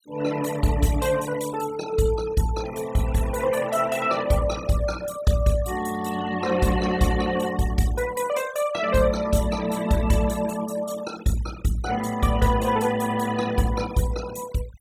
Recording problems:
denoising artefacts; signal-to-artefact ratio 14 dB

